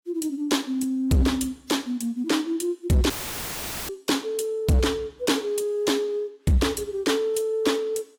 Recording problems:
codec artefacts; AAC, log-spectral distance 2 dB, nothing above 16 kHz
distortion; hard clipping, signal-to-distortion ratio 12 dB
audio cutting out; at 3 s for 1 s; filled with static

